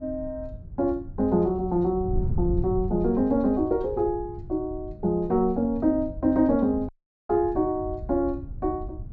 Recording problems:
treble missing; nothing above 7.7 kHz
wind on the microphone; below 110 Hz, SNR 11 dB
audio cutting out; at 7 s

